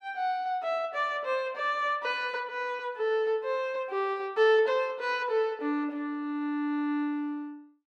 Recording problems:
none

